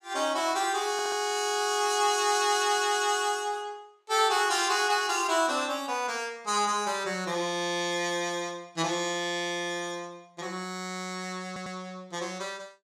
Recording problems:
stutter; at 1 s and at 11 s

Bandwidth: 15.5 kHz